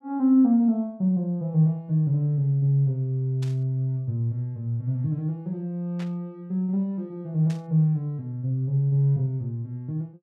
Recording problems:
burst of static; at 3.5 s, at 6 s and at 7.5 s; peak -14 dB vs average level

